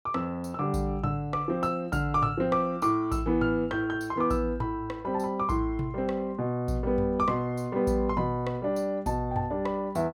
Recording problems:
none

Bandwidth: 17 kHz